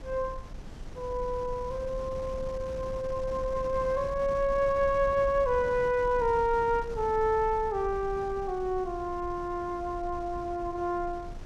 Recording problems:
wind noise; below 120 Hz, SNR 14 dB

